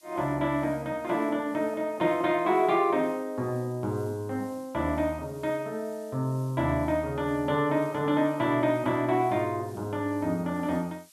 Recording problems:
background hiss; slope +4 dB per octave, SNR 27 dB

